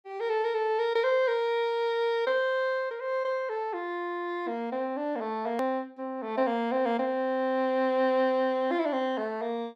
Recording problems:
click at an edit; at 5.5 s

